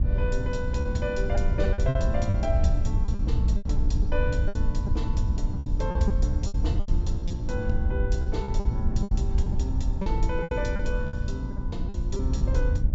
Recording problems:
treble missing; nothing above 8 kHz
hum; 60 Hz, harmonics up to 600 Hz, SNR 4 dB
wind on the microphone; below 76 Hz, SNR -6 dB
packet loss; 11% of the sound replaced, filled with repeated pitch periods

